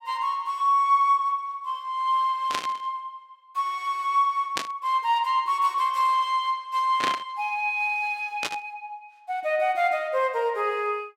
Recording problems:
burst of static; 4 times, first at 2.5 s; peak +2 dB vs average level

